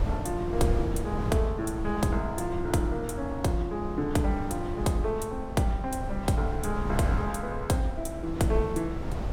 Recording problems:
wind on the microphone; below 170 Hz, SNR 6 dB

